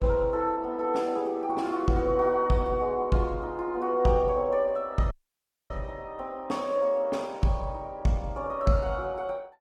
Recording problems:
codec artefacts; Opus, log-spectral distance 2 dB
dropout; at 5 s for 0.5 s

